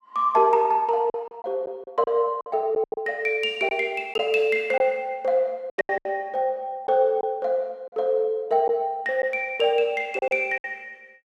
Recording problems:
packet loss; 8% of the sound replaced, filled with silence

